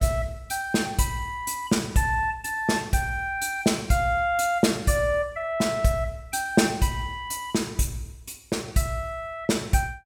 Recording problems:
none

